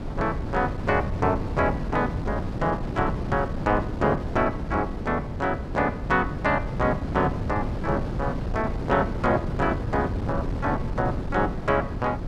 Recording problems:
wind on the microphone; below 270 Hz, SNR 4 dB

